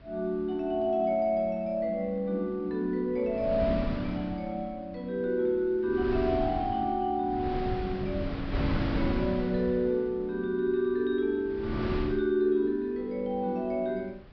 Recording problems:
low-pass filter; nothing above 5.5 kHz
wind noise; below 340 Hz, SNR 7 dB

